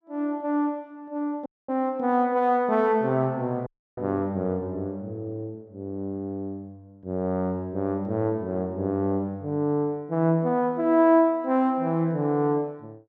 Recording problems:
dropout; at 1.5 s and at 3.5 s

